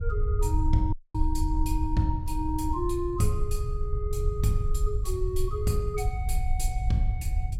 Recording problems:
hum; 60 Hz, harmonics up to 600 Hz, SNR 21 dB
low-frequency rumble; below 72 Hz, SNR -1 dB
audio cutting out; at 1 s

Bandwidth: 16 kHz